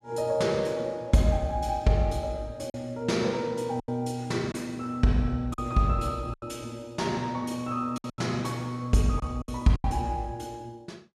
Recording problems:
packet loss; 5% of the sound replaced, filled with silence

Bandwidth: 13 kHz